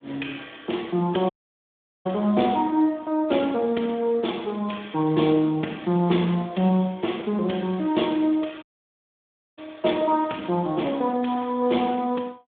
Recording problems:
telephone audio; 150 Hz to 3.6 kHz, Speex
audio cutting out; at 1.5 s for 0.5 s and at 8.5 s for 1 s

